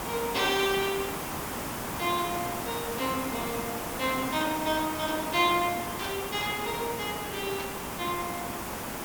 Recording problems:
background hiss; SNR 4 dB
burst of static; at 3 s, at 6 s and at 7.5 s; peak -6 dB vs average level

